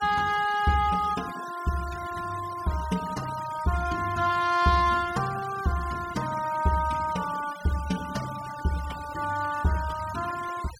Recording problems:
noise reduction artefacts; signal-to-artefact ratio 15 dB

